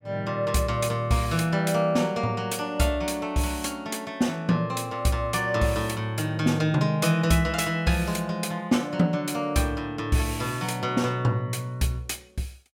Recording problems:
none

